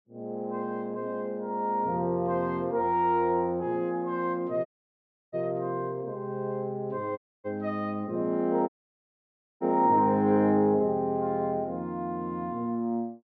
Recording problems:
dropout; at 4.5 s for 0.5 s, at 7 s and at 8.5 s for 1 s

